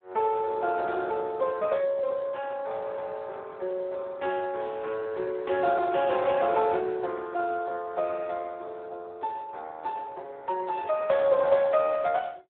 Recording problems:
telephone audio; 320 Hz to 2.8 kHz, Speex

